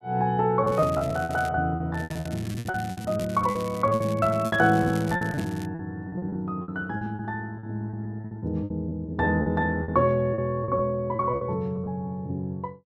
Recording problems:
packet loss; 15% of the sound replaced, filled with repeated pitch periods
crackling; at 0.5 s and from 2 to 5.5 s; loose cable, SNR 18 dB

